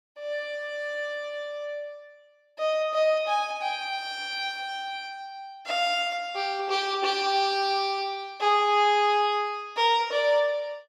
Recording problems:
none

